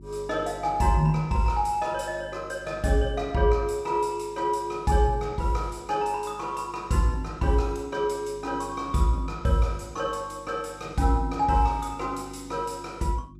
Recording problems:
hum; 50 Hz, harmonics up to 350 Hz, SNR 20 dB

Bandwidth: 15 kHz